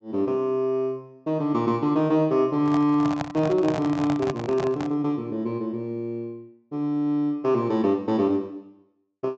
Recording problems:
treble cut off; nothing above 8 kHz
handling noise; from 2.5 to 5 s; peak -1 dB vs average level

